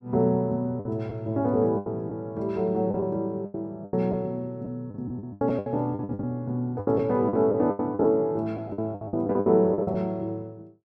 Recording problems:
lost packets; 14% of the sound replaced, filled with the last packet

